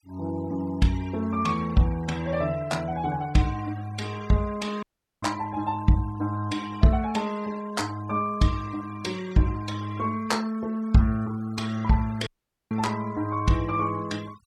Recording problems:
denoising artefacts; signal-to-artefact ratio 20 dB
audio cutting out; at 5 s and at 12 s

